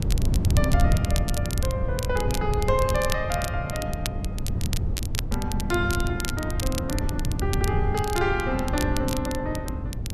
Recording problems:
wind on the microphone; below 120 Hz, SNR -1 dB
crackling; vinyl, SNR 7 dB

